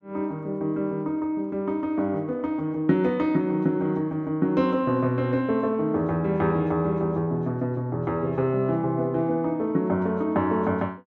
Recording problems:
none

